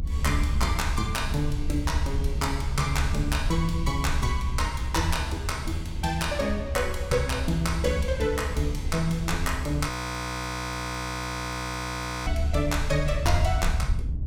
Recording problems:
rumble; below 76 Hz, SNR 3 dB
wind on the microphone; below 160 Hz, SNR 14 dB
audio freezing; at 10 s for 2.5 s

